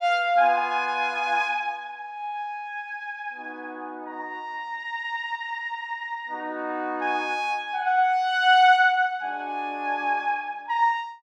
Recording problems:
none

